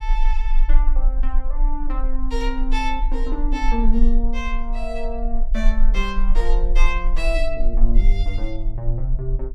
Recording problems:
low-frequency rumble; below 34 Hz, strongest tone 20 Hz, SNR -4 dB

